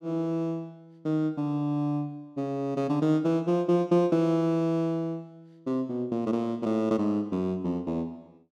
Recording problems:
none

